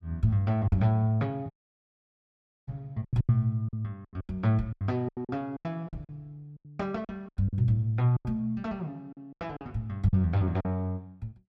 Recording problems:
lost packets; 13% of the sound replaced, filled with silence
audio cutting out; at 1.5 s for 1 s

